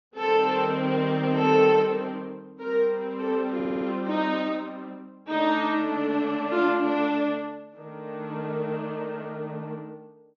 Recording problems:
low-pass filter; nothing above 6.7 kHz
audio stuttering; at 3.5 s

